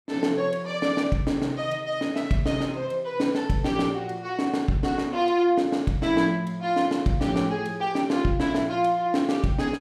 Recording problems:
none

